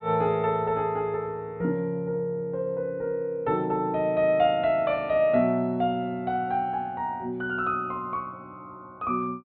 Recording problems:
treble missing; nothing above 4.2 kHz

